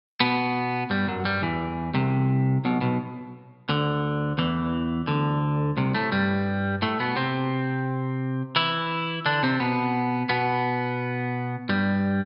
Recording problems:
treble cut off; nothing above 5.5 kHz

